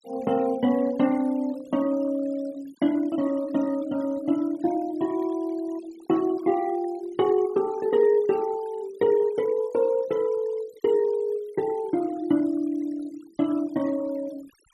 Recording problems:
denoising artefacts; signal-to-artefact ratio 23 dB

